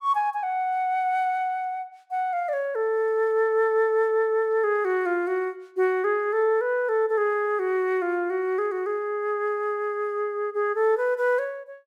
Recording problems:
none

